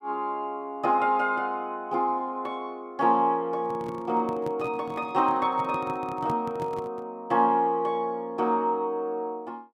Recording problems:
microphone handling noise; from 3.5 to 7 s; peak -5 dB vs average level

